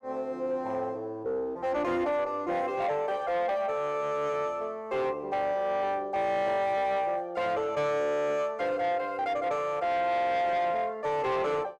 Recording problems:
distortion; soft clipping, signal-to-distortion ratio 11 dB

